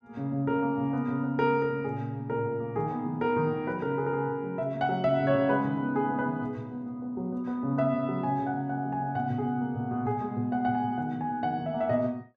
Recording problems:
none

